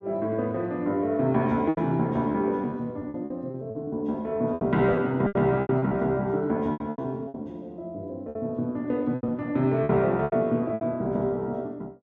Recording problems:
lost packets; 11% of the sound replaced, filled with repeated pitch periods

